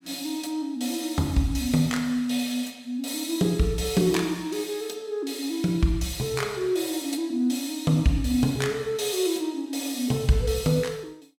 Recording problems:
none

